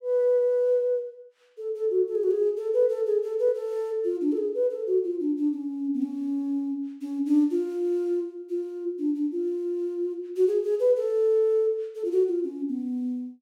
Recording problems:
none

